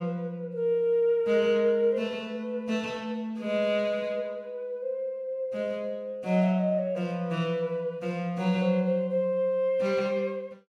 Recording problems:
none

